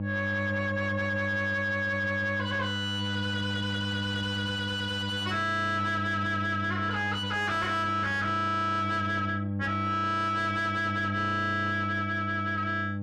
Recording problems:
distortion; soft clipping, signal-to-distortion ratio 11 dB
electrical hum; 50 Hz, harmonics up to 600 Hz, SNR 4 dB

